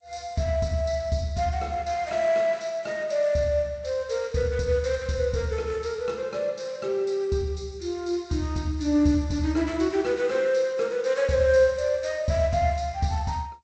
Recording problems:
lossy compression; G.722, log-spectral distance 2 dB, nothing above 7.8 kHz

